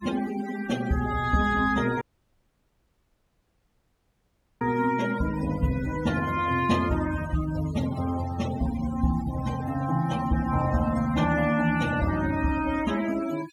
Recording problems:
noise reduction artefacts; signal-to-artefact ratio 14 dB
dropout; at 2 s for 2.5 s

